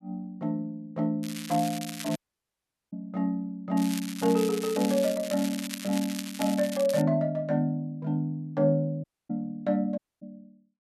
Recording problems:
crackle; at 1 s and from 4 to 7 s; loose cable, SNR 10 dB
dropout; at 2 s for 1 s, at 9 s and at 10 s

